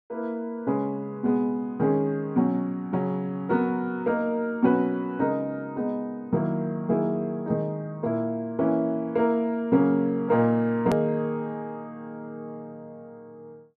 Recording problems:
hard cut with a click; at 11 s

